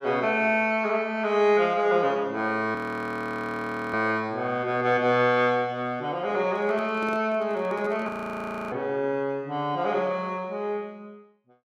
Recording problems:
frozen audio; at 3 s for 1 s and at 8 s for 0.5 s
microphone handling noise; from 6.5 to 8 s; peak -10 dB vs average level

